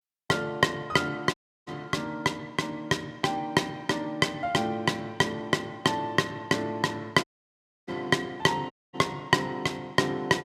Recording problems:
dropout; at 1.5 s, at 7 s for 0.5 s and at 8.5 s

